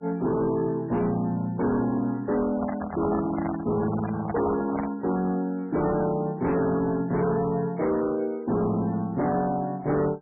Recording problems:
codec artefacts; MP3, log-spectral distance 3 dB, nothing above 10.7 kHz
distortion; hard clipping, signal-to-distortion ratio 10 dB
handling noise; from 2.5 to 5 s; peak 0 dB vs average level

